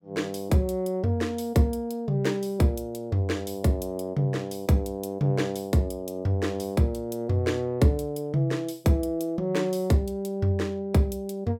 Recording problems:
none

